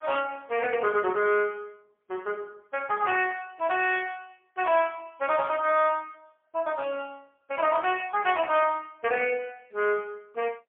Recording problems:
phone line; 320 Hz to 3.3 kHz, AMR-NB, then MP3

